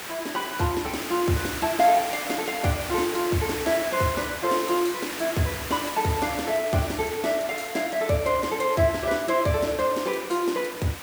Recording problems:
hiss; slope -2 dB per octave, SNR 8 dB

